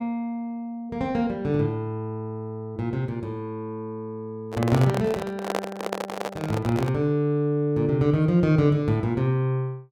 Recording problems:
handling noise; from 4.5 to 7 s; peak +3 dB vs average level

